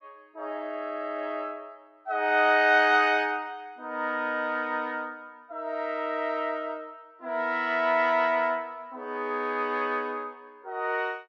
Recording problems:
none

